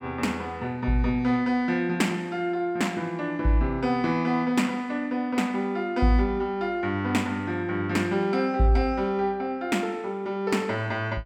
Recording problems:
none

